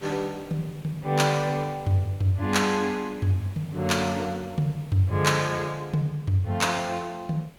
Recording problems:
hiss; slope -5 dB per octave, SNR 22 dB

